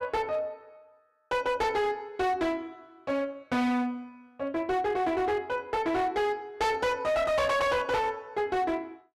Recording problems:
distortion; hard clipping, signal-to-distortion ratio 8 dB

